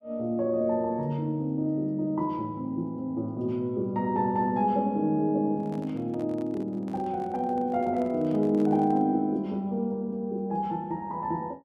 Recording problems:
microphone handling noise; from 5.5 to 9 s; peak -12 dB vs average level

